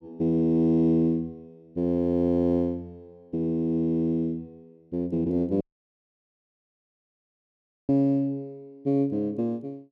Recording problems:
dropout; at 5.5 s for 2.5 s

